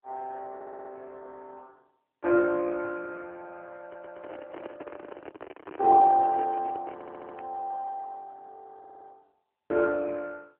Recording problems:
phone line; 300 Hz to 2.1 kHz, AMR-NB
audio stuttering; 4 times, first at 0.5 s
microphone handling noise; from 4 to 7.5 s; peak -9 dB vs average level

